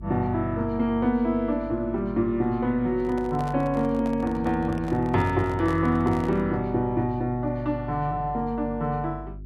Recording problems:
hum; 50 Hz, harmonics up to 400 Hz, SNR 15 dB
handling noise; from 3 to 6.5 s; peak -9 dB vs average level

